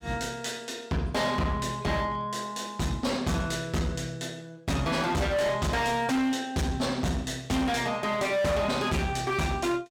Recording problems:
distorted audio; hard clipping, uneven, signal-to-distortion ratio 7 dB

